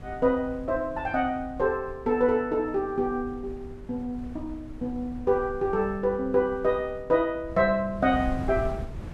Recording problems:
wind on the microphone; below 130 Hz, SNR 14 dB

